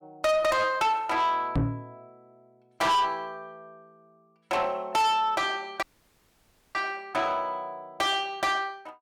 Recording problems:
distorted audio; soft clipping, signal-to-distortion ratio 7 dB
microphone bump; at 1.5 s; peak +4 dB vs average level
audio cutting out; at 6 s for 1 s

